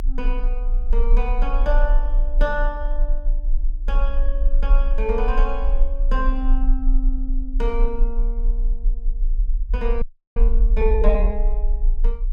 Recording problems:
rumble; below 38 Hz, strongest tone 30 Hz, SNR -6 dB
frozen audio; at 10 s

